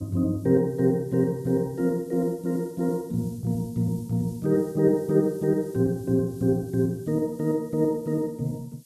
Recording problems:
hiss; SNR 27 dB

